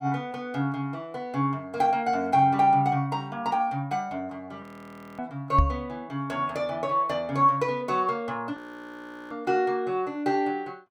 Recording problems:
audio freezing; at 4.5 s for 0.5 s and at 8.5 s for 0.5 s
microphone bump; at 5.5 s; peak +7 dB vs average level

